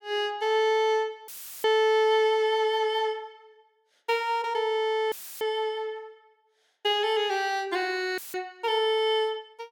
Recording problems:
audio cutting out; at 1.5 s, at 5 s and at 8 s; filled with static

